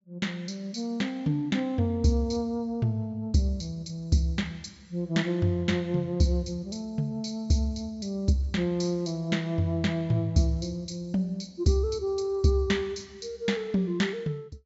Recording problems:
treble missing; nothing above 8 kHz

